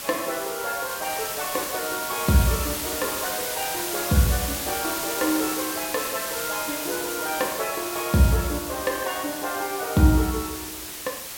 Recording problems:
hiss; slope 0 dB per octave, SNR 3 dB

